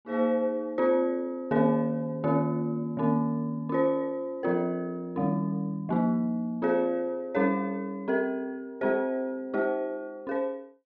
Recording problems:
none

